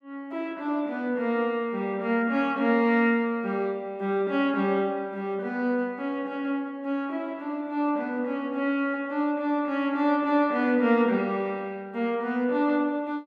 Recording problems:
none

